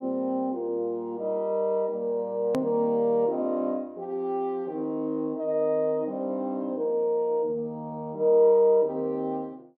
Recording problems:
click at an edit; at 2.5 s

